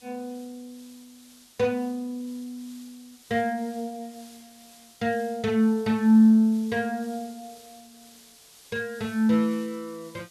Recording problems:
hiss; slope +1 dB per octave, SNR 25 dB

